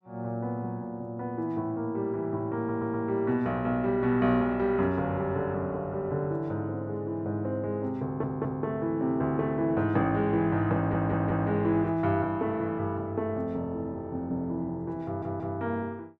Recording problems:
stutter; 4 times, first at 2.5 s

